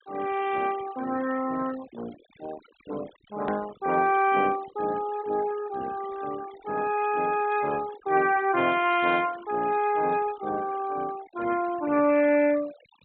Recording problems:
treble cut off; nothing above 4 kHz
denoising artefacts; signal-to-artefact ratio 19 dB
edit click; at 3.5 s

